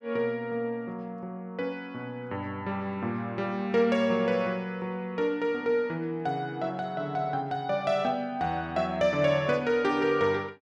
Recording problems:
none

